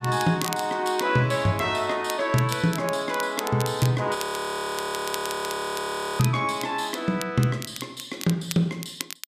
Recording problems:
crackle; vinyl, SNR 12 dB
audio freezing; at 4 s for 2 s

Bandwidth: 14.5 kHz